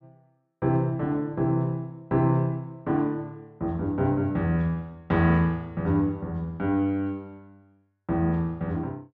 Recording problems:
none

